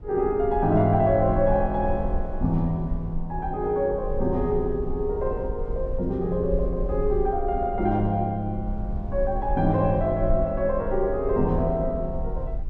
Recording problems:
rumble; below 56 Hz, SNR 9 dB

